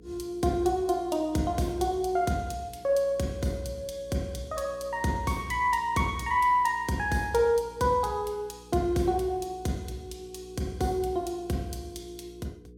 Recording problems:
hum; 60 Hz, harmonics up to 480 Hz, SNR 22 dB

